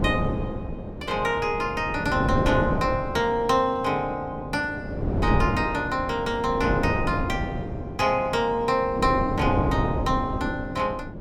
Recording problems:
wind noise; below 370 Hz, SNR 4 dB

